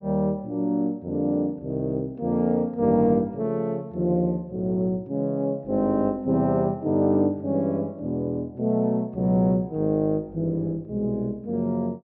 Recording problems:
treble missing; nothing above 6.3 kHz

